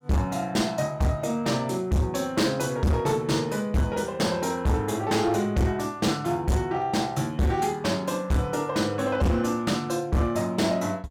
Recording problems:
distortion; hard clipping, uneven, signal-to-distortion ratio 7 dB

